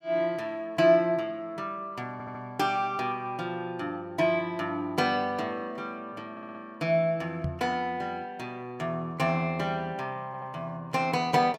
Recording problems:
audio stuttering; at 2 s, at 6.5 s and at 10 s
microphone bump; at 7.5 s; peak +1 dB vs average level

